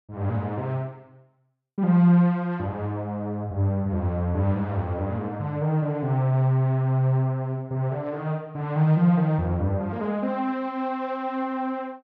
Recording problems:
none

